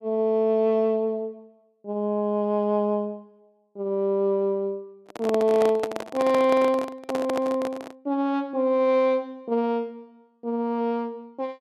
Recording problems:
handling noise; from 5 to 8 s; peak -2 dB vs average level

